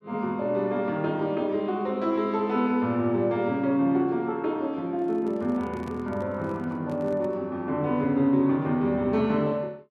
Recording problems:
microphone handling noise; from 5 to 7.5 s; peak -9 dB vs average level

